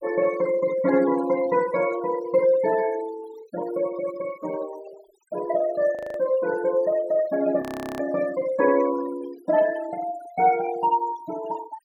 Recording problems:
denoising artefacts; signal-to-artefact ratio 17 dB
frozen audio; at 6 s and at 7.5 s

